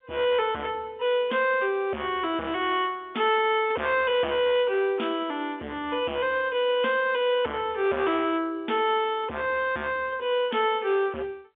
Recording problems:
telephone audio; 260 Hz to 3.5 kHz, G.711
distorted audio; hard clipping, signal-to-distortion ratio 6 dB

